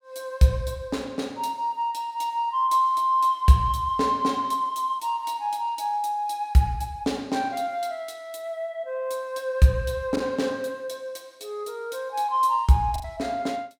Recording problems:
packet loss; 0.9% of the sound replaced, filled with the last packet

